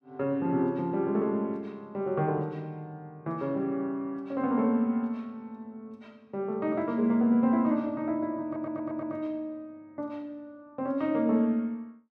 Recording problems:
audio stuttering; at 8.5 s

